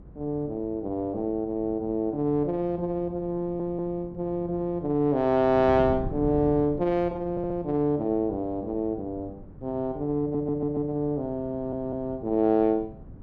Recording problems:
wind noise; below 220 Hz, SNR 16 dB
audio stuttering; 4 times, first at 3.5 s

